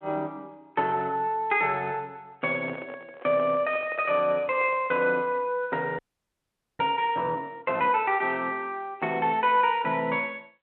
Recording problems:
phone line; 280 Hz to 3.5 kHz, G.726
microphone handling noise; from 2.5 to 5 s; peak -10 dB vs average level
audio freezing; at 6 s for 1 s

